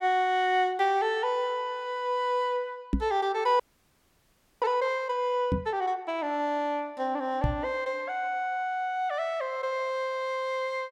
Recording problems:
microphone bump; at 3 s, at 5.5 s and at 7.5 s; peak +6 dB vs average level
frozen audio; at 3.5 s for 1 s

